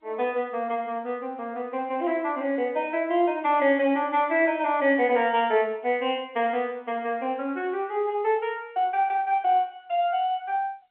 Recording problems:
telephone audio; 280 Hz to 3.4 kHz, G.711

